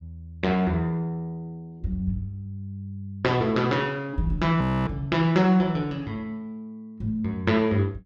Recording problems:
frozen audio; at 4.5 s

